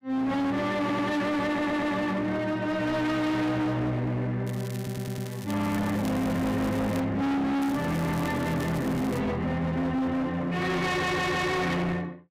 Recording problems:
distortion; hard clipping, uneven, signal-to-distortion ratio 7 dB
stutter; 4 times, first at 1 s
crackle; from 4.5 to 7 s and from 7.5 to 9 s; loose cable, SNR 18 dB

